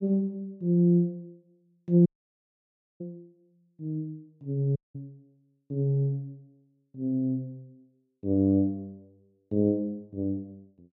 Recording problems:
dropout; at 2 s for 1 s and at 5 s

